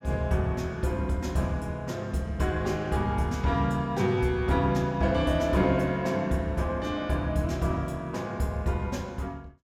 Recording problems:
none

